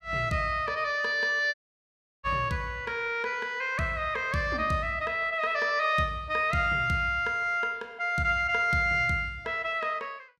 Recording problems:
dropout; at 1.5 s for 0.5 s

